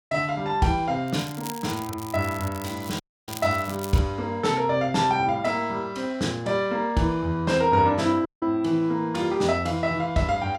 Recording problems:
crackle; from 1 to 4 s; loose cable, SNR 16 dB
audio cutting out; at 3 s and at 8.5 s

